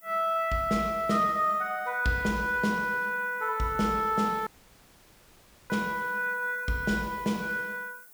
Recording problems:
background hiss; SNR 23 dB
dropout; at 4.5 s for 1 s

